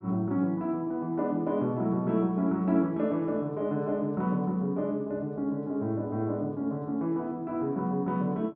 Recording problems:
none

